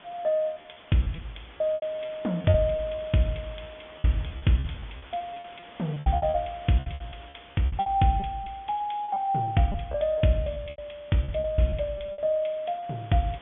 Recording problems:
treble missing; nothing above 3.4 kHz
background hiss; SNR 22 dB
packet loss; 13% of the sound replaced, filled with repeated pitch periods

